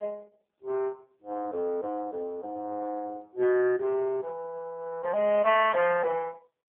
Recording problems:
telephone audio; 320 Hz to 3.1 kHz, AMR-NB

